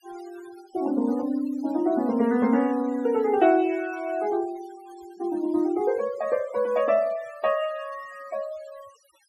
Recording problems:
noise reduction artefacts; signal-to-artefact ratio 22 dB

